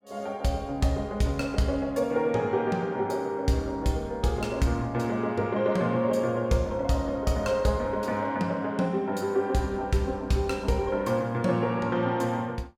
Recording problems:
none

